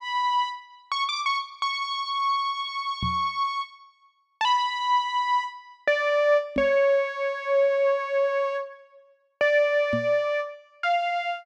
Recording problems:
microphone thump; at 3 s, at 6.5 s and at 10 s; peak -1 dB vs average level

